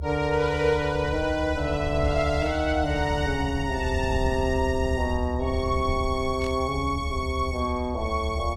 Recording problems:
low-frequency rumble; below 78 Hz, SNR 6 dB
burst of static; at 2.5 s and at 6.5 s; peak -13 dB vs average level

